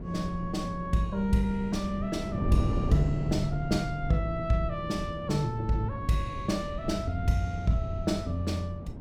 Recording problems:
low-frequency rumble; below 110 Hz, SNR 13 dB
wind noise; below 250 Hz, SNR 7 dB

